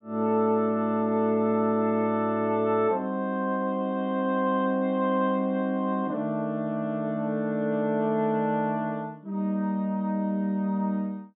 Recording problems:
treble cut off; nothing above 4 kHz

